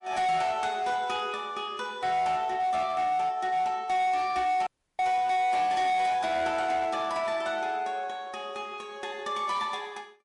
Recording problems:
lossy codec; MP3, log-spectral distance 2 dB
distorted audio; hard clipping, uneven, signal-to-distortion ratio 10 dB
dropout; at 4.5 s

